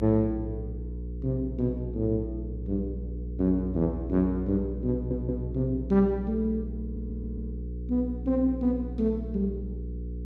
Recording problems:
electrical hum; 60 Hz, harmonics up to 480 Hz, SNR 7 dB
audio stuttering; at 5 s and at 7 s

